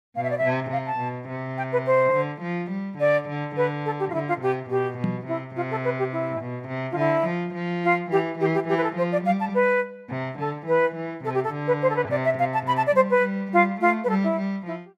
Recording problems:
knock on the microphone; at 5 s; peak +2 dB vs average level

